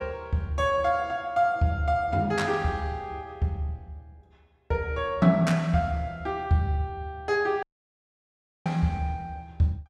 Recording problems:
audio cutting out; at 7.5 s for 1 s

